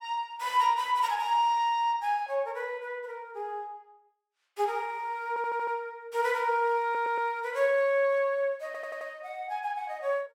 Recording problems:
audio stuttering; at 5.5 s, at 7 s and at 8.5 s

